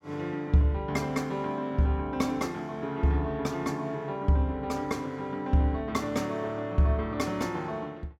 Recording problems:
none

